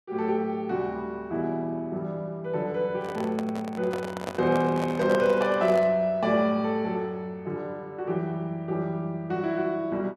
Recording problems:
handling noise; from 3 to 6 s; peak -1 dB vs average level

